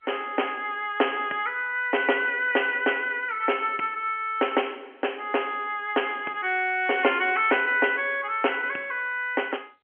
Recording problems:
phone line; 280 Hz to 3.2 kHz, G.711

